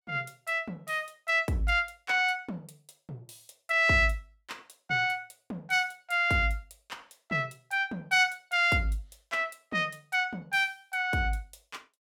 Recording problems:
none

